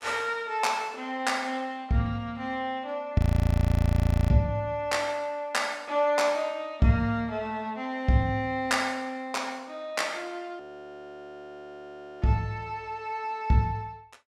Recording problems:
audio freezing; at 3 s for 1 s and at 11 s for 1.5 s

